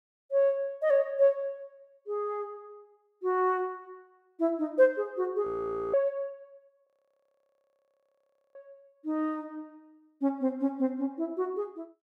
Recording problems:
audio freezing; at 5.5 s and at 7 s for 1.5 s

